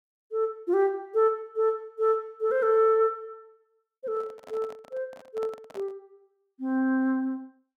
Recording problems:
handling noise; from 4 to 6 s; peak -12 dB vs average level

